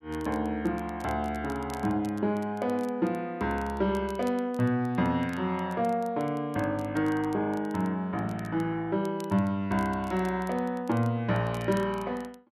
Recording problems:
crackling; vinyl, SNR 25 dB

